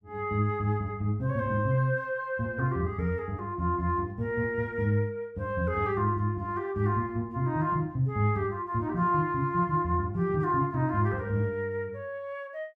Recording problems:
none

